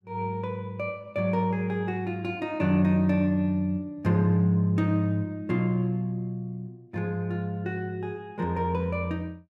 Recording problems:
none

